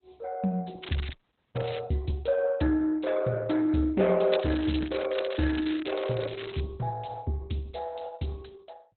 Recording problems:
codec artefacts; Opus, log-spectral distance 7 dB, nothing above 4.1 kHz
crackle; at 1 s and from 4.5 to 6.5 s; loose cable, SNR 12 dB
audio freezing; at 1 s

